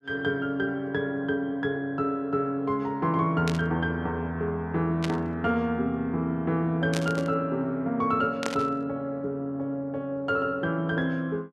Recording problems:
static burst; 4 times, first at 3.5 s; peak 0 dB vs average level

